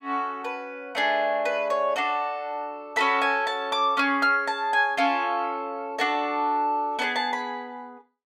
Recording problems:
none

